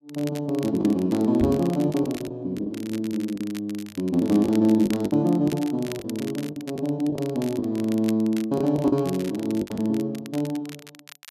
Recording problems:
crackle; vinyl, SNR 19 dB
packet loss; 7% of the sound replaced, filled with the last packet
knock on the microphone; at 1.5 s; peak -1 dB vs average level

